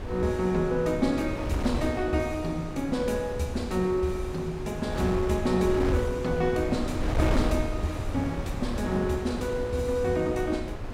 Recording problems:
wind noise; below 360 Hz, SNR 6 dB

